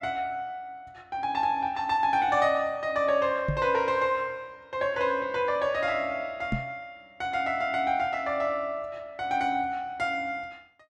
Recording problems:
microphone thump; at 3.5 s and at 6.5 s; peak +2 dB vs average level

